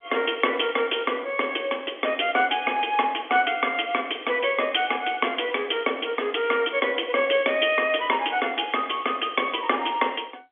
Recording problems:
phone line; 240 Hz to 3.4 kHz, G.711

